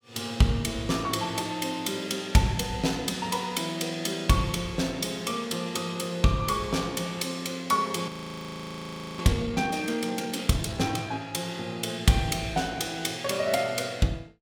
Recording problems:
audio freezing; at 8 s for 1 s

